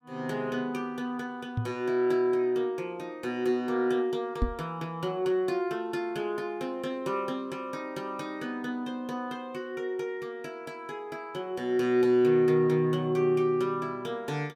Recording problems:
knock on the microphone; at 1.5 s and at 4.5 s; peak +5 dB vs average level

